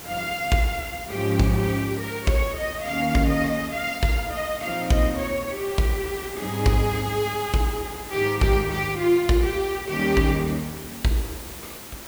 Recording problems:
background hiss; slope -3 dB per octave, SNR 13 dB

